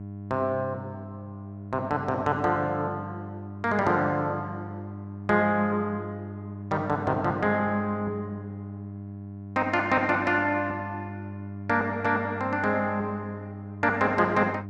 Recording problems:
mains hum; 50 Hz, harmonics up to 700 Hz, SNR 11 dB

